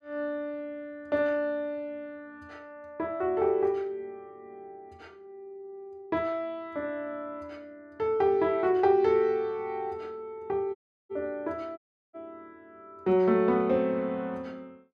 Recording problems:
dropout; at 11 s and at 12 s

